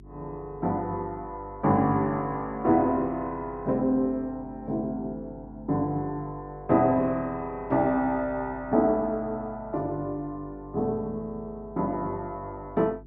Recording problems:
hum; 50 Hz, harmonics up to 400 Hz, SNR 20 dB

